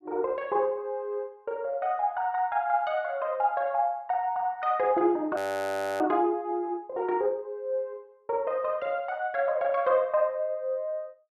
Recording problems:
audio freezing; at 5.5 s for 0.5 s

